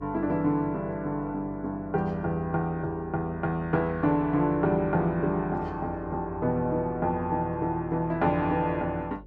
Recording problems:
electrical hum; 50 Hz, harmonics up to 550 Hz, SNR 20 dB

